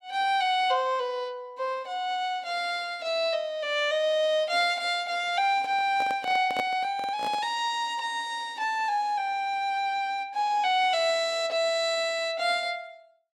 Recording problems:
handling noise; from 5.5 to 7.5 s; peak -3 dB vs average level

